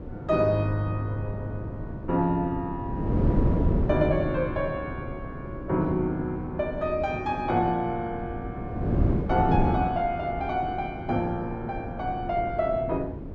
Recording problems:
wind noise; below 280 Hz, SNR 4 dB

